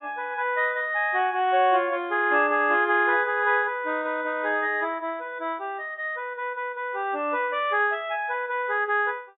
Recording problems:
low-pass filter; nothing above 4 kHz

